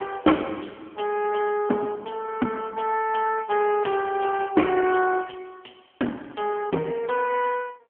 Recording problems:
phone line; 220 Hz to 2.9 kHz, AMR-NB

